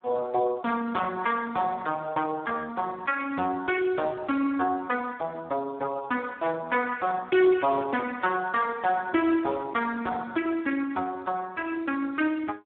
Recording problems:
phone line; 240 Hz to 3.7 kHz, Speex
distortion; soft clipping, signal-to-distortion ratio 14 dB

